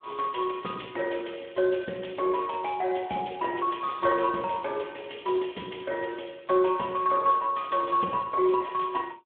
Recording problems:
telephone audio; 220 Hz to 3.4 kHz, Speex

